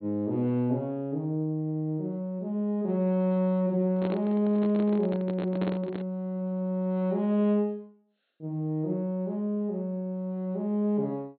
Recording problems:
treble missing; nothing above 4.3 kHz
handling noise; from 4 to 6 s; peak -1 dB vs average level

